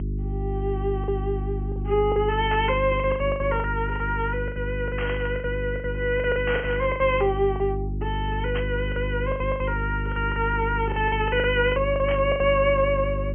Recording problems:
treble cut off; nothing above 3.2 kHz
electrical hum; 50 Hz, harmonics up to 400 Hz, SNR 5 dB
packet loss; 12% of the sound replaced, filled with the last packet
burst of static; 5 times, first at 2.5 s; peak -4 dB vs average level

